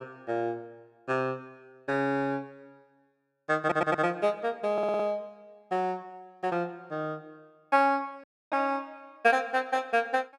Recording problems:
stutter; at 3.5 s and at 4.5 s
dropout; at 8 s

